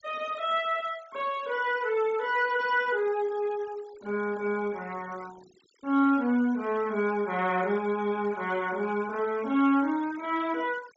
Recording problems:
treble missing; nothing above 8 kHz
noise reduction artefacts; signal-to-artefact ratio 22 dB

